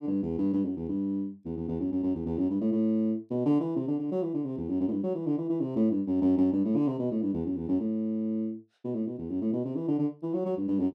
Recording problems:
none

